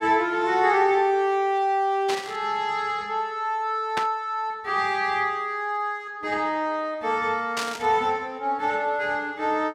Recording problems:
burst of static; at 2 s, at 4 s and at 7.5 s; peak 0 dB vs average level

